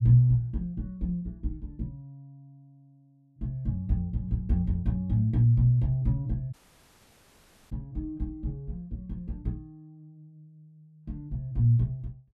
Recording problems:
dropout; at 6.5 s for 1 s

